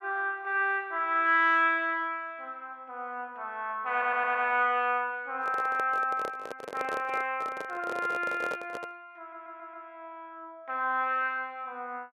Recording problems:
audio stuttering; at 4 s and at 9 s
microphone handling noise; from 5.5 to 9 s; peak -4 dB vs average level

